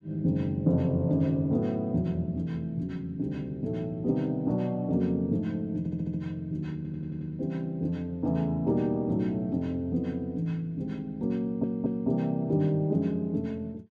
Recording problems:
audio stuttering; at 6 s, at 7 s and at 11 s

